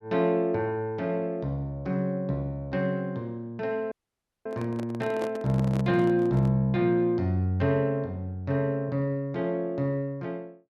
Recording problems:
audio cutting out; at 4 s for 0.5 s
handling noise; from 4.5 to 6.5 s; peak -5 dB vs average level

